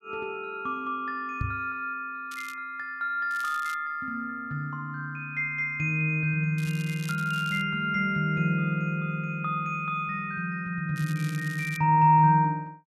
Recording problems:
microphone thump; at 1.5 s; peak 0 dB vs average level
crackling; 4 times, first at 2.5 s; loose cable, SNR 18 dB

